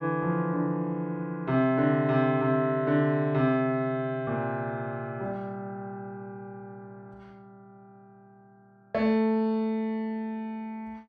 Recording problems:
none

